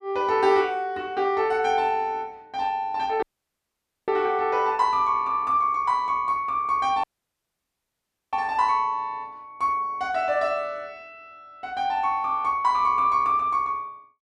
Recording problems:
audio cutting out; at 3 s for 1 s and at 7 s for 1.5 s

